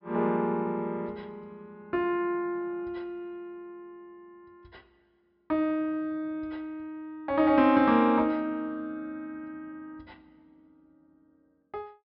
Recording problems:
treble cut off; nothing above 5.4 kHz

